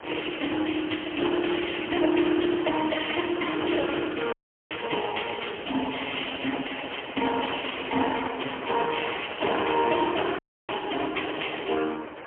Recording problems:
telephone audio; 260 Hz to 3.1 kHz, AMR-NB, then MP3
wind on the microphone; below 1.6 kHz, SNR 13 dB
dropout; at 4.5 s and at 10 s

